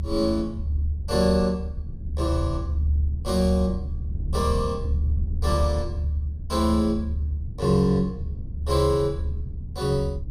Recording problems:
low-frequency rumble; below 76 Hz, strongest tone 74 Hz, SNR 3 dB

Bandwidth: 14.5 kHz